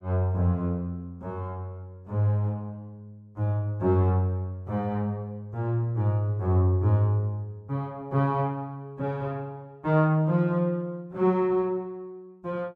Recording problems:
none

